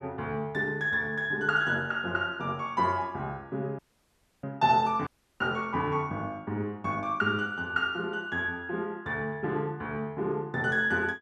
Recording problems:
audio cutting out; at 4 s for 0.5 s and at 5 s

